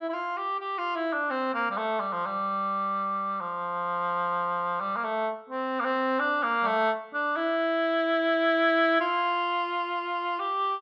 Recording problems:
none

